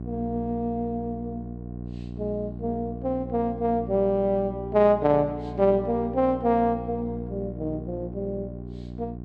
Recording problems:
hum; 60 Hz, harmonics up to 780 Hz, SNR 11 dB

